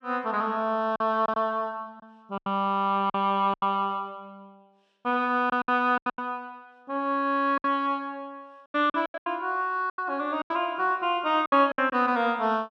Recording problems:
lost packets; 10% of the sound replaced, filled with silence

